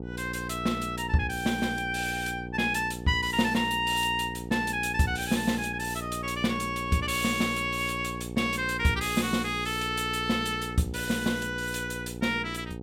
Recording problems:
hum; 60 Hz, harmonics up to 900 Hz, SNR 10 dB

